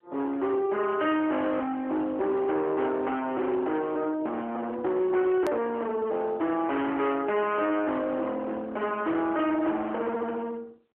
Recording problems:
telephone audio; 320 Hz to 3.2 kHz, AMR-NB
distorted audio; hard clipping, signal-to-distortion ratio 8 dB
edit click; at 5.5 s

